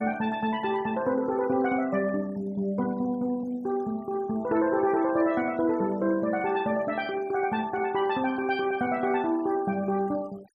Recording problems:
noise reduction artefacts; signal-to-artefact ratio 23 dB

